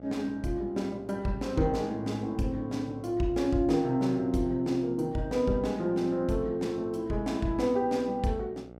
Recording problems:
hum; 60 Hz, harmonics up to 1.5 kHz, SNR 19 dB

